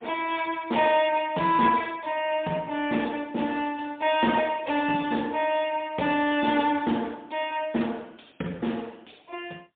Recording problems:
telephone audio; 130 Hz to 3.6 kHz, AMR-NB, then MP3

